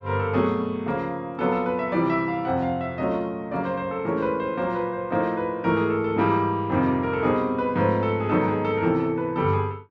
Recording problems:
none

